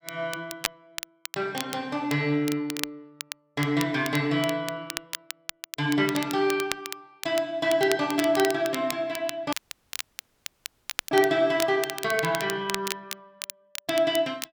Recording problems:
crackling; vinyl, SNR 10 dB
audio cutting out; at 9.5 s for 1.5 s

